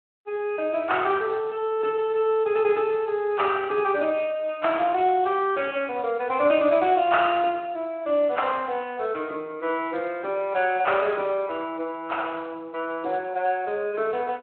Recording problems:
telephone audio; 320 Hz to 3.3 kHz, Speex

